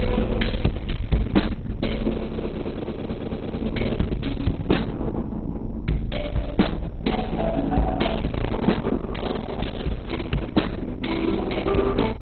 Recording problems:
lossy compression; Opus, then MP2, log-spectral distance 3 dB, nothing above 4 kHz
distortion; soft clipping, signal-to-distortion ratio 12 dB
low-frequency rumble; below 130 Hz, SNR 6 dB
audio freezing; at 2 s for 1.5 s and at 8.5 s

